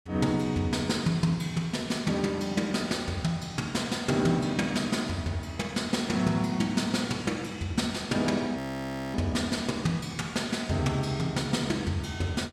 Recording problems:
audio freezing; at 8.5 s for 0.5 s

